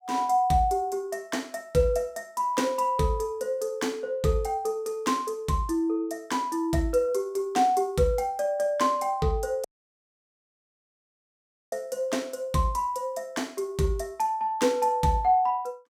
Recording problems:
dropout; at 9.5 s for 2 s

